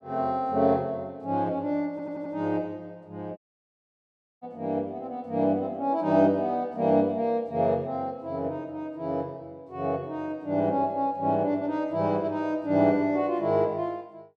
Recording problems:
audio stuttering; at 2 s
audio cutting out; at 3.5 s for 1 s

